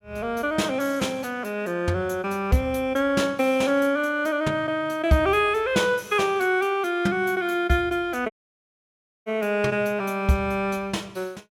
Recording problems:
dropout; at 8.5 s for 1 s

